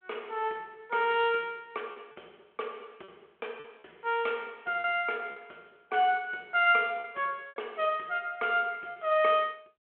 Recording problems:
phone line; 320 Hz to 3.5 kHz, G.726
lost packets; 4% of the sound replaced, filled with repeated pitch periods

